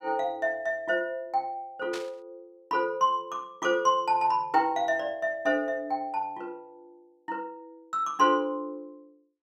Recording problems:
static burst; at 2 s; peak -7 dB vs average level

